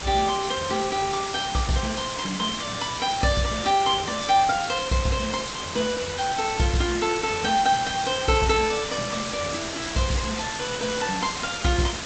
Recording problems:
codec artefacts; AAC, then G.722, log-spectral distance 16 dB, nothing above 8 kHz
hiss; slope -1 dB per octave, SNR 7 dB

